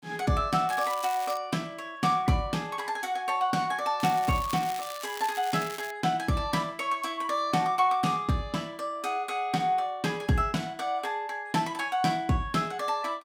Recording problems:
crackling; at 0.5 s and from 4 to 6 s; loose cable, SNR 13 dB

